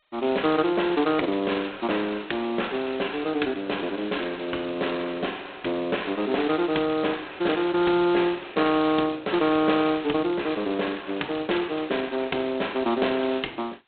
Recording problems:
phone line; 280 Hz to 4 kHz, G.726

